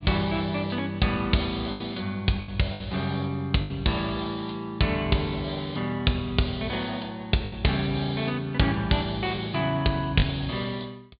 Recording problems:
treble missing; nothing above 4.5 kHz
packet loss; 3% of the sound replaced, filled with the last packet

